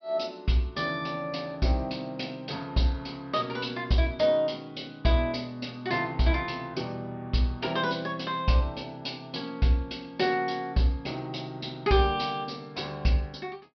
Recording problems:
low-pass filter; nothing above 5.5 kHz

